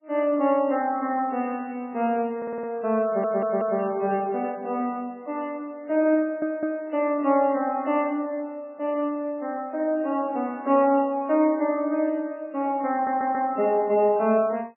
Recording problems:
codec artefacts; MP3, log-spectral distance 2 dB, nothing above 2.7 kHz
stutter; 4 times, first at 2.5 s

